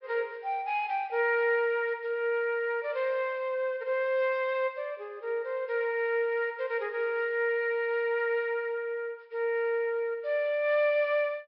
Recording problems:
treble missing; nothing above 5.4 kHz

